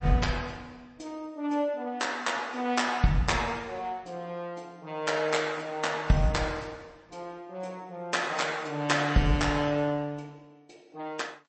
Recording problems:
lossy codec; MP3, log-spectral distance 3 dB, nothing above 8.2 kHz

